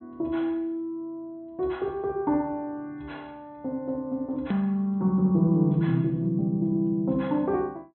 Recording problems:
treble cut off; nothing above 4.1 kHz
edit click; at 4.5 s

